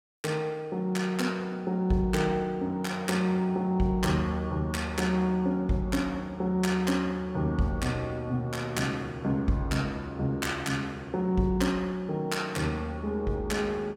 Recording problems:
none

